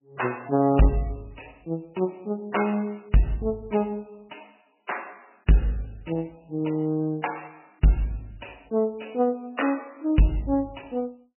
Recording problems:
lossy codec; MP3, log-spectral distance 8 dB, nothing above 2.9 kHz
distorted audio; hard clipping, signal-to-distortion ratio 11 dB

